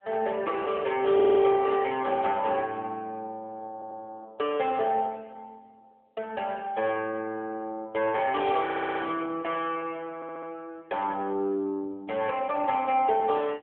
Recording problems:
telephone audio; 300 Hz to 3.4 kHz, AMR-NB
audio stuttering; 4 times, first at 1 s

